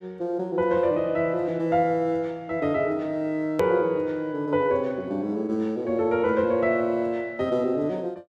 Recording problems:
click at an edit; at 3.5 s

